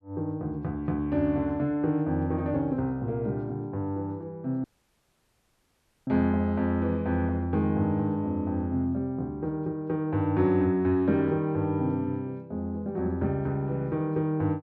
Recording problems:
audio cutting out; at 4.5 s for 1.5 s

